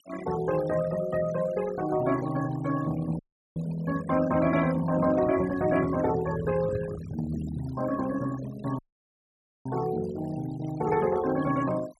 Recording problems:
noise reduction artefacts; signal-to-artefact ratio 16 dB
dropout; at 3 s and at 9 s for 1 s
handling noise; from 5 to 7.5 s; peak -3 dB vs average level

